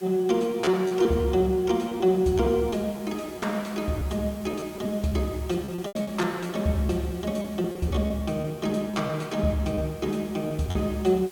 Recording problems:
background hiss; slope -1 dB per octave, SNR 22 dB
packet loss; 9% of the sound replaced, filled with repeated pitch periods

